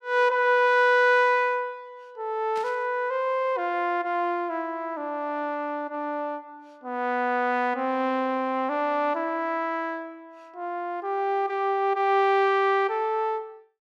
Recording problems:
static burst; at 2.5 s; peak -14 dB vs average level

